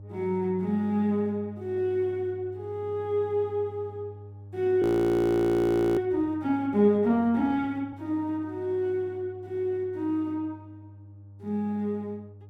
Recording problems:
hum; 50 Hz, harmonics up to 600 Hz, SNR 18 dB
audio freezing; at 5 s for 1 s

